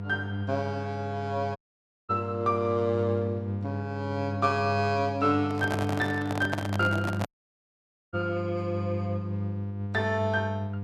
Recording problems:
hum; 50 Hz, harmonics up to 700 Hz, SNR 4 dB
dropout; at 1.5 s for 0.5 s and at 7.5 s for 1 s
handling noise; from 5.5 to 7.5 s; peak +3 dB vs average level

